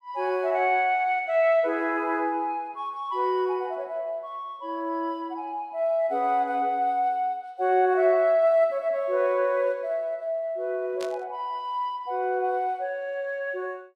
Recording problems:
static burst; at 11 s; peak -9 dB vs average level

